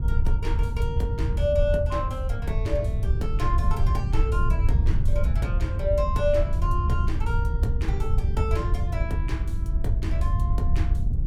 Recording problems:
wind noise; below 84 Hz, SNR -5 dB

